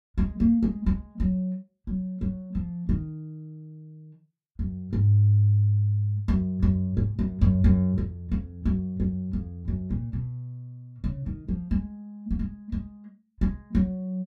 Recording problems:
none

